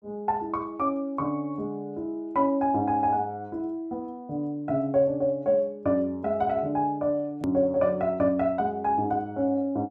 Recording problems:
hard cut with a click; at 7.5 s

